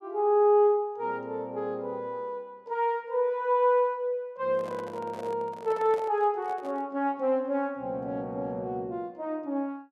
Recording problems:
microphone handling noise; from 4.5 to 7 s; peak -10 dB vs average level

